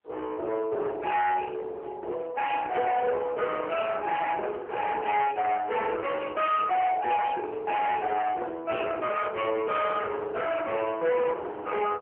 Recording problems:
phone line; 880 Hz to 2.5 kHz, AMR-NB
distortion; hard clipping, signal-to-distortion ratio 7 dB

